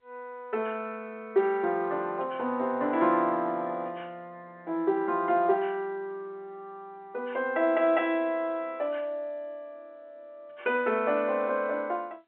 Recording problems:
telephone audio; 300 Hz to 3.7 kHz, G.711

